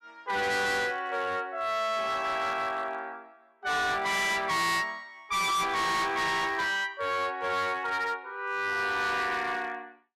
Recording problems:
distorted audio; hard clipping, signal-to-distortion ratio 6 dB

